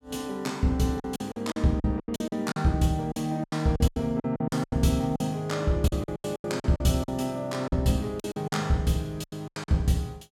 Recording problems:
lost packets; 16% of the sound replaced, filled with silence

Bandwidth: 17 kHz